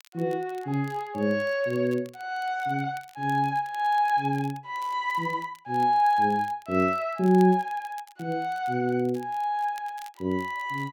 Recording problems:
crackling; vinyl, SNR 27 dB

